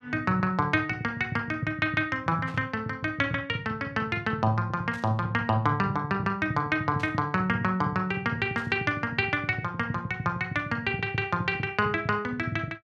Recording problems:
burst of static; 4 times, first at 2.5 s; peak -14 dB vs average level

